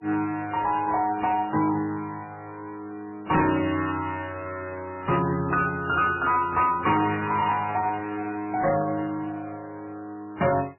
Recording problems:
codec artefacts; MP3, then AAC, log-spectral distance 3 dB, nothing above 2.6 kHz
distorted audio; hard clipping, uneven, signal-to-distortion ratio 11 dB

